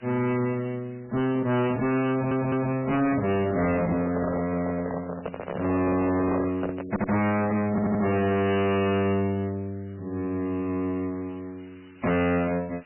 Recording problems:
lossy compression; MP3, log-spectral distance 8 dB, nothing above 2.9 kHz
distorted audio; hard clipping, uneven, signal-to-distortion ratio 6 dB
hiss; SNR 29 dB
stutter; at 2 s, at 7 s and at 7.5 s
microphone handling noise; from 4 to 7 s; peak 0 dB vs average level

